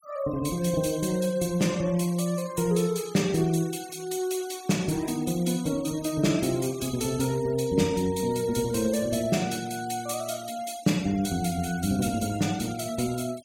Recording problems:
noise reduction artefacts; signal-to-artefact ratio 19 dB

